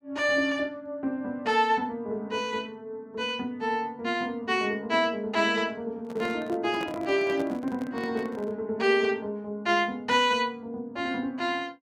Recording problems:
handling noise; from 6 to 8.5 s; peak -7 dB vs average level

